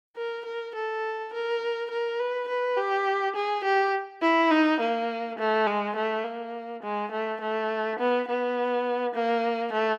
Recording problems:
none

